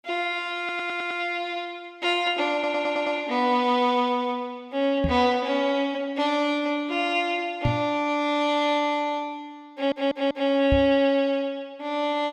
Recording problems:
audio stuttering; at 0.5 s, at 2.5 s and at 9.5 s
knock on the microphone; at 5 s, at 7.5 s and at 11 s; peak +3 dB vs average level

